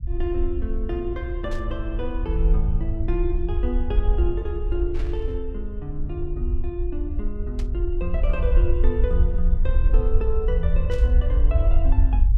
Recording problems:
low-frequency rumble; below 58 Hz, SNR -6 dB
burst of static; 4 times, first at 1.5 s; peak -8 dB vs average level

